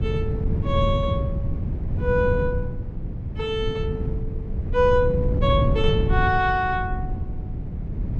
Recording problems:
wind on the microphone; below 150 Hz, SNR 2 dB

